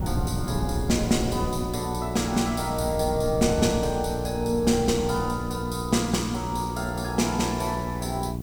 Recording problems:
hum; 60 Hz, harmonics up to 780 Hz, SNR 6 dB
hiss; slope +1 dB per octave, SNR 25 dB
wind on the microphone; below 210 Hz, SNR 8 dB

